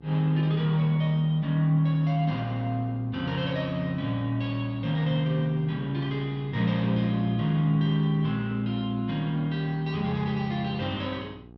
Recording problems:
hum; 60 Hz, harmonics up to 1.2 kHz, SNR 22 dB

